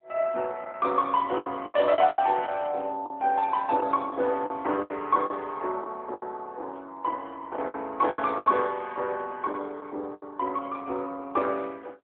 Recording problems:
phone line; 300 Hz to 3.6 kHz, AMR-NB
packet loss; 9% of the sound replaced, filled with the last packet

